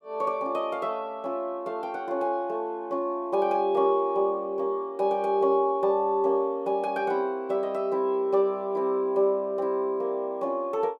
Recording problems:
none

